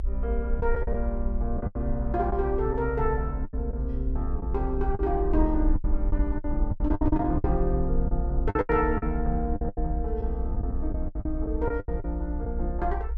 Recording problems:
low-frequency rumble; below 56 Hz, SNR 1 dB
packet loss; 12% of the sound replaced, filled with the last packet

